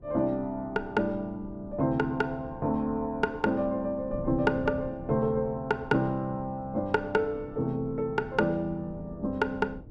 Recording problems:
wind on the microphone; below 220 Hz, SNR 16 dB

